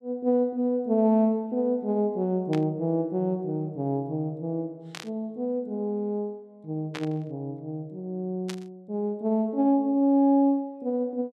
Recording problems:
burst of static; 4 times, first at 2.5 s; peak -6 dB vs average level

